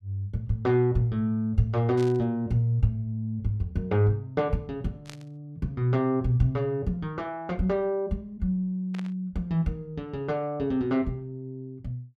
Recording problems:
static burst; at 2 s, at 5 s and at 9 s; peak -11 dB vs average level

